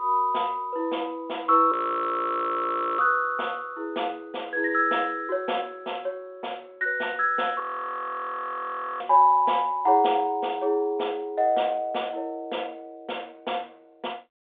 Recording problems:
phone line; 320 Hz to 3.6 kHz, G.726
audio freezing; at 2 s for 1.5 s and at 7.5 s for 1.5 s

